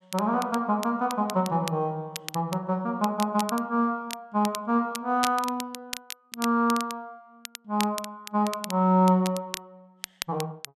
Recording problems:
crackle; vinyl, SNR 12 dB

